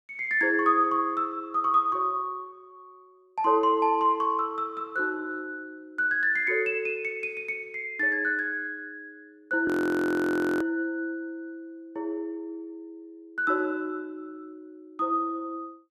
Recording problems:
audio freezing; at 9.5 s for 1 s

